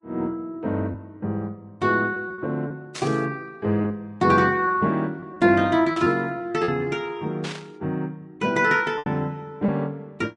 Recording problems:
lossy compression; Vorbis, log-spectral distance 2 dB, nothing above 10.1 kHz
lost packets; 5% of the sound replaced, filled with repeated pitch periods
static burst; at 3 s, at 6 s and at 7.5 s; peak -6 dB vs average level

